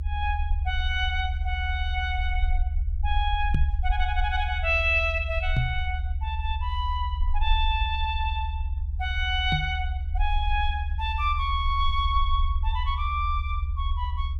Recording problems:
rumble; below 74 Hz, SNR 1 dB
knock on the microphone; at 3.5 s, at 5.5 s and at 9.5 s; peak +8 dB vs average level

